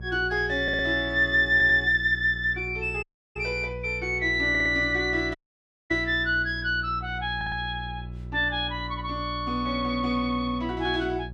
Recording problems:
hum; 60 Hz, harmonics up to 540 Hz, SNR 13 dB
audio stuttering; 4 times, first at 0.5 s
dropout; at 3 s and at 5.5 s for 0.5 s

